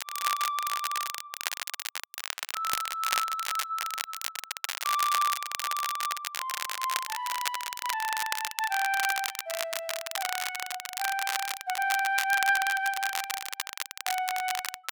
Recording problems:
crackle; vinyl, SNR 2 dB

